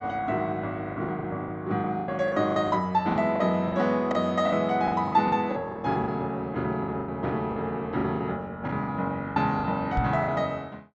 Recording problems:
treble cut off; nothing above 8 kHz
packet loss; 13% of the sound replaced, filled with the last packet
microphone thump; at 10 s; peak +2 dB vs average level

